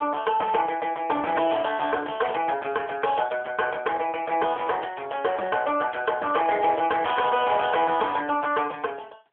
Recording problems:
phone line; 320 Hz to 3.3 kHz, AMR-NB
distortion; hard clipping, signal-to-distortion ratio 11 dB

